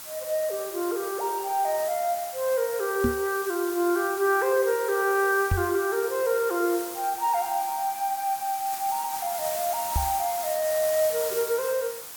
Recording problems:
background hiss; SNR 8 dB
knock on the microphone; at 3 s, at 5.5 s and at 10 s; peak +4 dB vs average level

